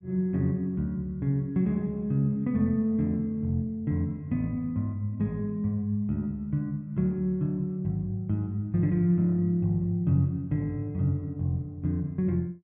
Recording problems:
treble missing; nothing above 5.5 kHz

